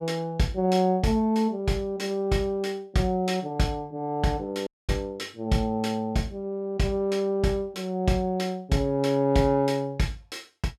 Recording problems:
dropout; at 4.5 s

